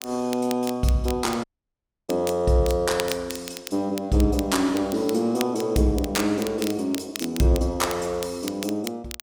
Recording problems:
crackling; vinyl, SNR 13 dB
dropout; at 1.5 s for 0.5 s

